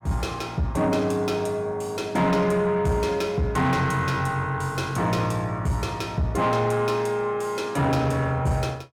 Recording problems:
distortion; soft clipping, signal-to-distortion ratio 12 dB

